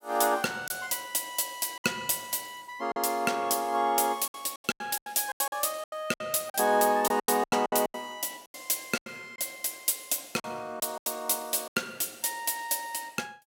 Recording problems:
lost packets; 11% of the sound replaced, filled with silence

